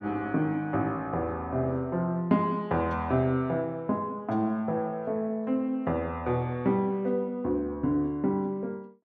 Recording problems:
none

